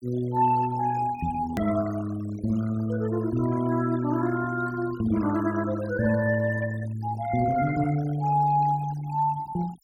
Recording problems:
denoising artefacts; signal-to-artefact ratio 17 dB
hard cut with a click; at 1.5 s

